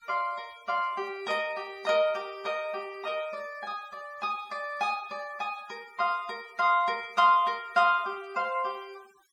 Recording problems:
noise reduction artefacts; signal-to-artefact ratio 25 dB

